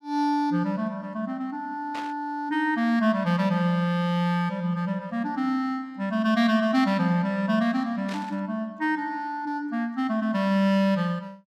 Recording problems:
static burst; at 2 s and at 8 s; peak -9 dB vs average level

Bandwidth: 14.5 kHz